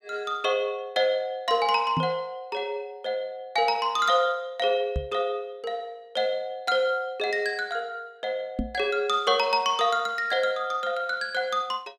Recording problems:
microphone bump; at 2 s, at 5 s and at 8.5 s; peak +1 dB vs average level

